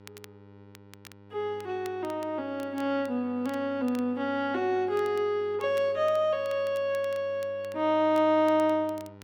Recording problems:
hum; 50 Hz, harmonics up to 1.9 kHz, SNR 23 dB
crackle; vinyl, SNR 26 dB

